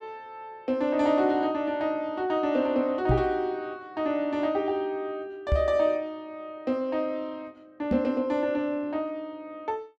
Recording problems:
microphone bump; at 3 s, at 5.5 s and at 8 s; peak +6 dB vs average level

